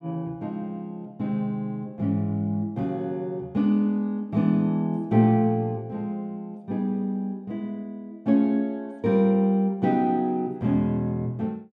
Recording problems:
none

